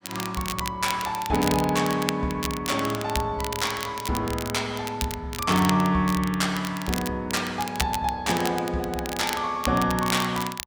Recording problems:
crackling; vinyl, SNR 9 dB

